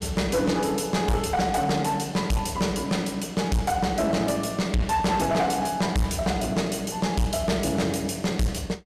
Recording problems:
distortion; hard clipping, uneven, signal-to-distortion ratio 7 dB

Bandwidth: 14.5 kHz